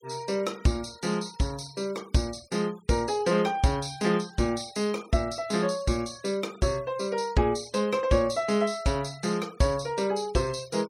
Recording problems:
noise reduction artefacts; signal-to-artefact ratio 23 dB

